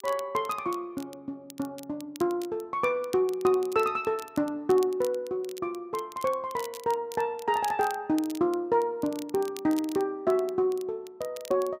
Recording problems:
crackle; vinyl, SNR 19 dB

